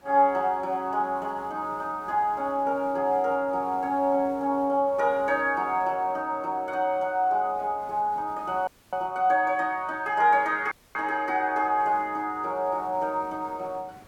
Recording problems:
background hiss; slope -6 dB per octave, SNR 27 dB
audio cutting out; at 8.5 s and at 11 s

